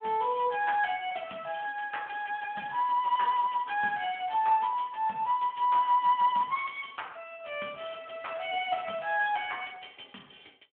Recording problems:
phone line; 240 Hz to 3.3 kHz, Speex

